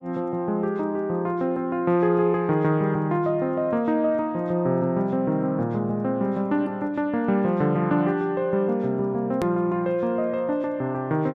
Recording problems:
edit click; at 9.5 s

